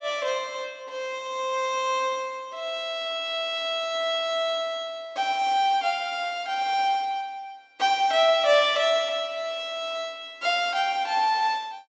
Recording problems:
low-pass filter; nothing above 8 kHz

